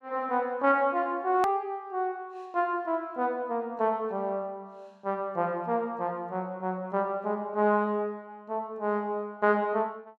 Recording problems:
edit click; at 1.5 s

